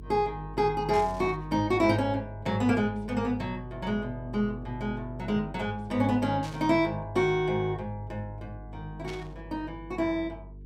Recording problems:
hum; 50 Hz, harmonics up to 450 Hz, SNR 16 dB
burst of static; at 1 s, at 6.5 s and at 9 s; peak -10 dB vs average level

